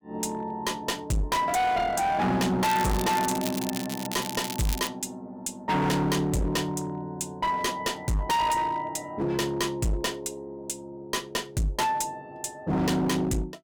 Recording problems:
distorted audio; hard clipping, uneven, signal-to-distortion ratio 6 dB
crackle; from 2.5 to 5 s; loose cable, SNR 8 dB

